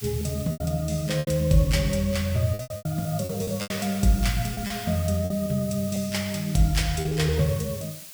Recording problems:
hiss; slope +2 dB per octave, SNR 14 dB
packet loss; 9% of the sound replaced, filled with repeated pitch periods

